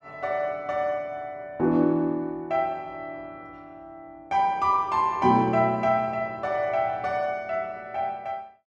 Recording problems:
none

